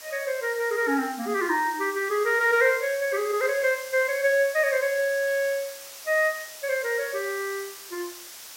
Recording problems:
background hiss; slope +2 dB per octave, SNR 15 dB

